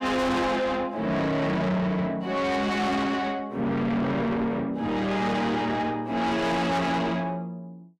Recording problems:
distorted audio; soft clipping, signal-to-distortion ratio 7 dB

